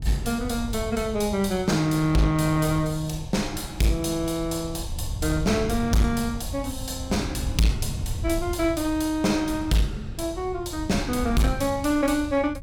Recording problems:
distortion; hard clipping, uneven, signal-to-distortion ratio 11 dB
wind noise; below 100 Hz, SNR 10 dB

